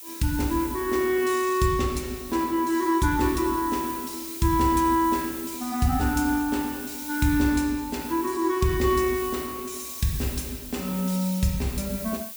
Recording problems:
hiss; SNR 11 dB

